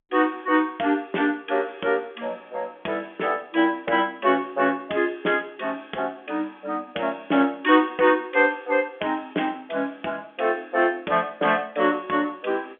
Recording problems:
telephone audio; 240 Hz to 3.5 kHz, G.711

